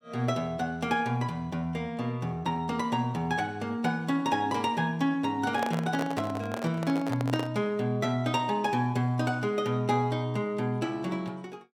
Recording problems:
handling noise; from 5.5 to 7.5 s; peak 0 dB vs average level

